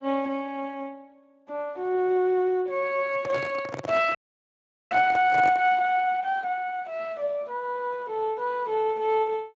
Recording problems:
codec artefacts; Speex, then Speex, log-spectral distance 2 dB
handling noise; from 3 to 5.5 s; peak -3 dB vs average level
audio freezing; at 4 s for 1 s

